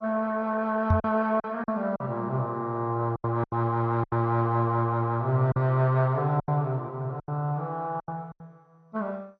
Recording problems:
codec artefacts; MP2, log-spectral distance 2 dB, nothing above 5 kHz
lost packets; 9% of the sound replaced, filled with silence
microphone bump; at 1 s; peak +7 dB vs average level

